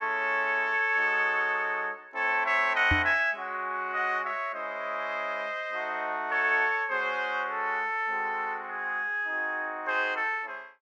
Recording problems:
knock on the microphone; at 3 s; peak +2 dB vs average level

